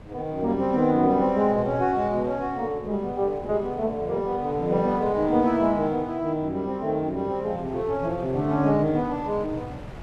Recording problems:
wind on the microphone; below 470 Hz, SNR 17 dB

